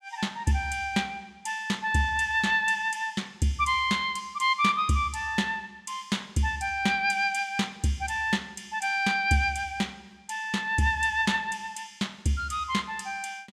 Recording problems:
none

